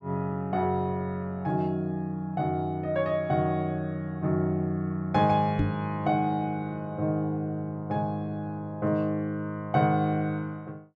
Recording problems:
microphone thump; at 5.5 s; peak +5 dB vs average level

